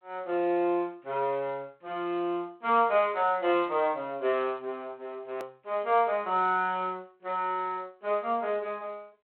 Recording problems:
phone line; 300 Hz to 3.7 kHz, G.726
click at an edit; at 5.5 s

